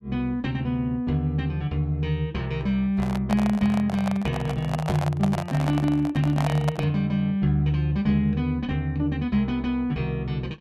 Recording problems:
handling noise; from 3 to 7 s; peak 0 dB vs average level

